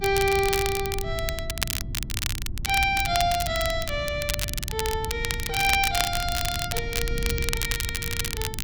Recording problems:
hum; 50 Hz, harmonics up to 350 Hz, SNR 19 dB
wind on the microphone; below 110 Hz, SNR 8 dB
crackling; vinyl, SNR 3 dB

